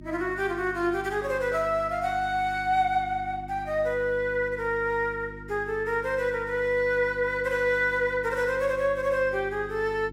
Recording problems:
hum; 50 Hz, harmonics up to 350 Hz, SNR 17 dB

